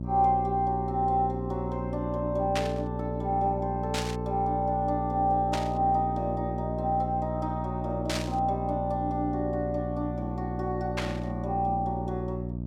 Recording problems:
hum; 60 Hz, harmonics up to 660 Hz, SNR 4 dB
burst of static; 5 times, first at 2.5 s; peak +2 dB vs average level

